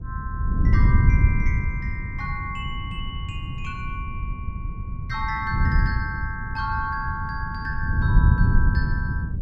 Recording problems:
wind noise; below 110 Hz, SNR -6 dB

